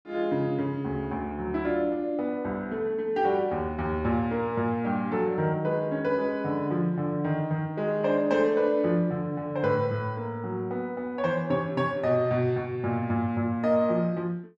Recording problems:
none

